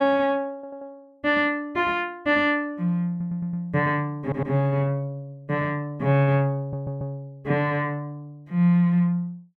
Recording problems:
stutter; 4 times, first at 0.5 s

